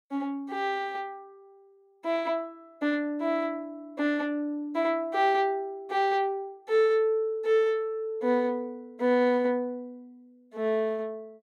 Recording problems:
none

